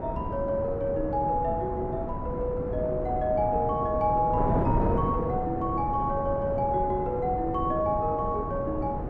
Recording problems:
wind noise; below 430 Hz, SNR 4 dB

